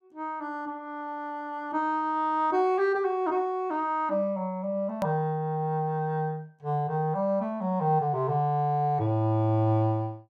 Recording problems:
click at an edit; at 5 s

